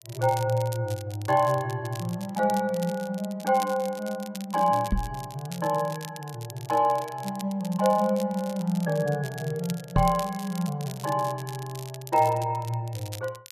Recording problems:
crackling; vinyl, SNR 16 dB
knock on the microphone; at 5 s and at 10 s; peak +6 dB vs average level

